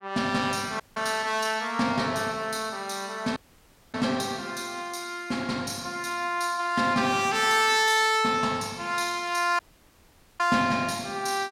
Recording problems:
dropout; at 1 s, at 3.5 s for 0.5 s and at 9.5 s for 1 s

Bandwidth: 16 kHz